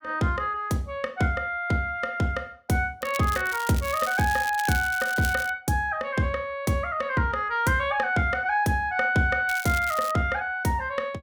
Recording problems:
crackle; from 3 to 5.5 s and at 9.5 s; loose cable, SNR 12 dB

